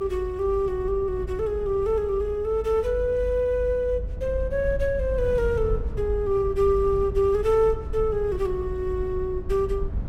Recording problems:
electrical hum; 60 Hz, harmonics up to 660 Hz, SNR 20 dB
rumble; below 78 Hz, SNR 9 dB

